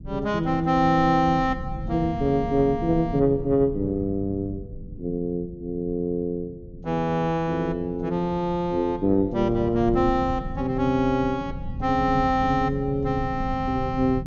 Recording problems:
treble cut off; nothing above 6.8 kHz
low-frequency rumble; below 160 Hz, SNR 12 dB

